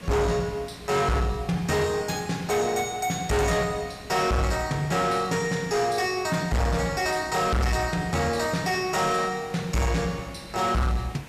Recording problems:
distortion; soft clipping, signal-to-distortion ratio 6 dB
hiss; SNR 18 dB

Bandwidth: 14 kHz